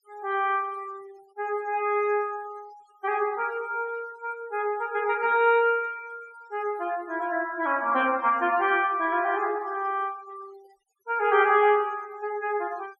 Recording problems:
denoising artefacts; signal-to-artefact ratio 24 dB

